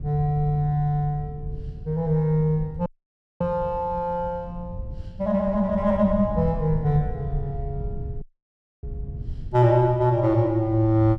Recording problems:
wind on the microphone; below 110 Hz, SNR 13 dB
audio cutting out; at 3 s for 0.5 s and at 8 s for 0.5 s

